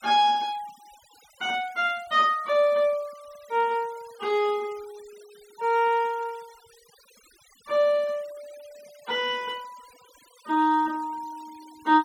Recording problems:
noise reduction artefacts; signal-to-artefact ratio 26 dB

